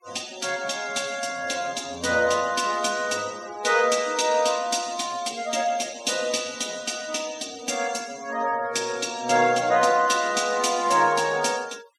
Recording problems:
denoising artefacts; signal-to-artefact ratio 20 dB

